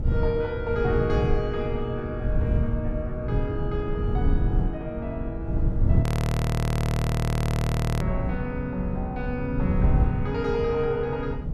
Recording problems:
wind on the microphone; below 150 Hz, SNR -2 dB
audio freezing; at 6 s for 2 s

